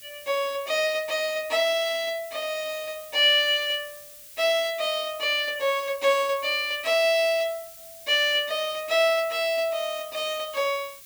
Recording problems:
background hiss; SNR 19 dB

